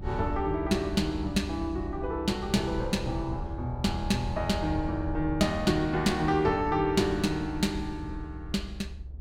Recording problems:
rumble; below 78 Hz, SNR 10 dB

